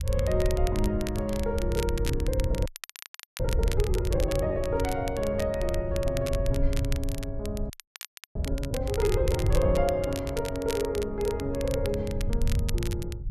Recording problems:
low-frequency rumble; below 94 Hz, SNR 2 dB
crackling; vinyl, SNR 11 dB
frozen audio; at 2.5 s for 0.5 s and at 7.5 s for 0.5 s

